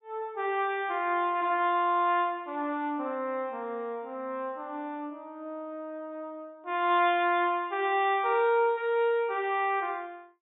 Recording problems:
low-pass filter; nothing above 4 kHz

